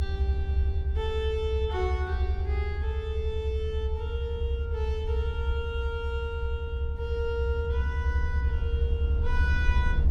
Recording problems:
rumble; below 78 Hz, strongest tone 66 Hz, SNR -5 dB

